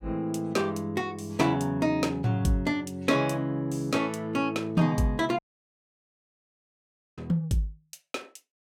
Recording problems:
dropout; at 5.5 s for 2 s

